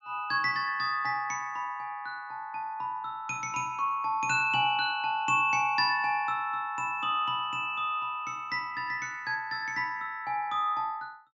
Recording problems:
treble cut off; nothing above 8 kHz

